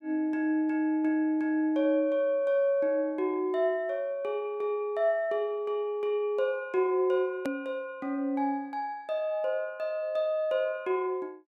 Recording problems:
click at an edit; at 7.5 s

